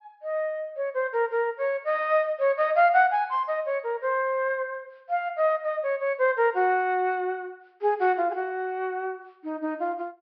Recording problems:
low-pass filter; nothing above 5.5 kHz

